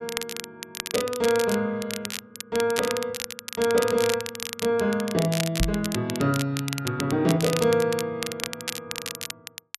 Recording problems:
crackling; vinyl, SNR 8 dB
microphone bump; at 5.5 s; peak +3 dB vs average level

